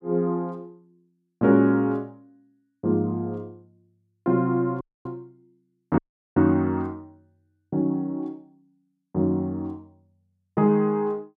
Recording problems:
dropout; at 5 s and at 6 s

